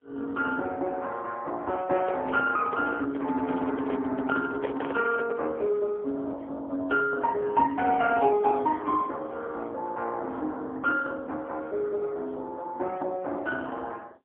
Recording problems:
phone line; 240 Hz to 2.8 kHz, AMR-NB, then MP3
microphone handling noise; from 2 to 5.5 s; peak -2 dB vs average level

